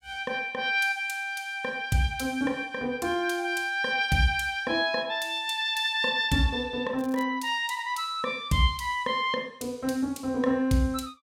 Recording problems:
crackle; at 7 s; loose cable, SNR 25 dB

